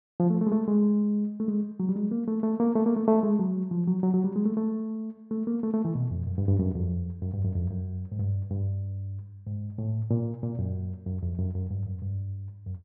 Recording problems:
none

